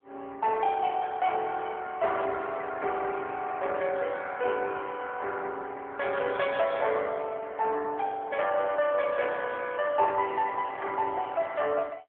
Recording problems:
phone line; 340 Hz to 3.4 kHz, AMR-NB

